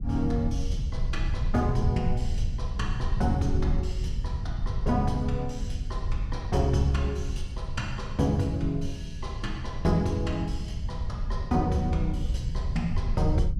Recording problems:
low-frequency rumble; below 86 Hz, SNR 3 dB

